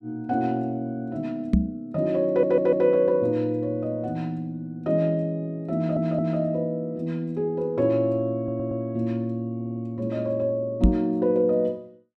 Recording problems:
knock on the microphone; at 1.5 s and at 11 s; peak +9 dB vs average level
stutter; 4 times, first at 2.5 s

